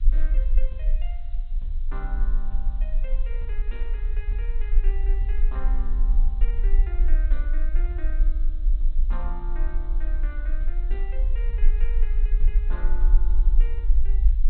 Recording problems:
treble missing; nothing above 4.2 kHz
background hiss; SNR 23 dB
rumble; below 38 Hz, strongest tone 24 Hz, SNR -16 dB
crackle; at 12 s; loose cable, SNR 29 dB

